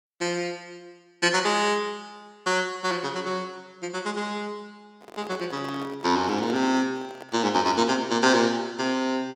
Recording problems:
handling noise; from 5 to 8 s; peak -7 dB vs average level

